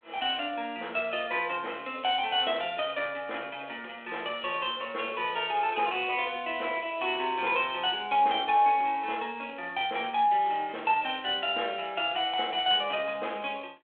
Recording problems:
phone line; 320 Hz to 3.4 kHz, G.726

